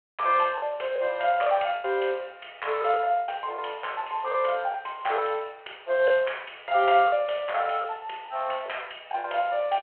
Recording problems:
telephone audio; 340 Hz to 3.3 kHz, G.726
packet loss; 7% of the sound replaced, filled with the last packet

